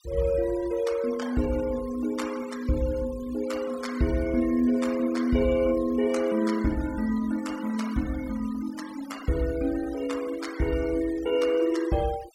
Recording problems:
noise reduction artefacts; signal-to-artefact ratio 18 dB

